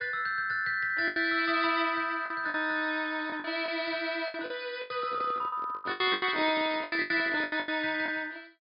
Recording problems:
low-pass filter; nothing above 5.5 kHz
lost packets; 13% of the sound replaced, filled with the last packet
handling noise; from 5 to 7.5 s; peak -8 dB vs average level

